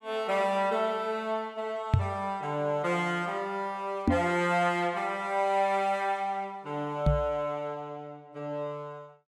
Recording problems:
microphone bump; at 2 s, at 4 s and at 7 s; peak +10 dB vs average level

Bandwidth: 17 kHz